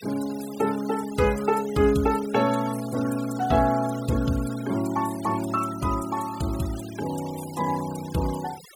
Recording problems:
denoising artefacts; signal-to-artefact ratio 16 dB

